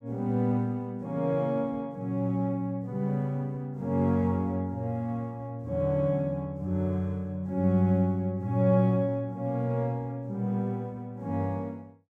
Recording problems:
none

